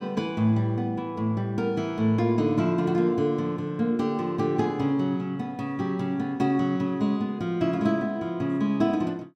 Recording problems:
none

